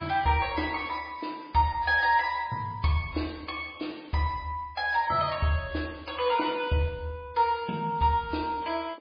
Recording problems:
codec artefacts; MP3, log-spectral distance 4 dB, nothing above 5 kHz

